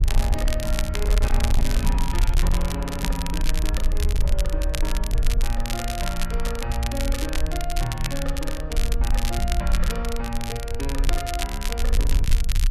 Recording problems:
distortion; hard clipping, signal-to-distortion ratio 11 dB
rumble; below 52 Hz, SNR -4 dB
crackling; vinyl, SNR 3 dB

